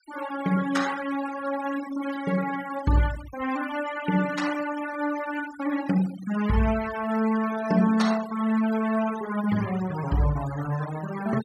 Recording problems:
denoising artefacts; signal-to-artefact ratio 14 dB

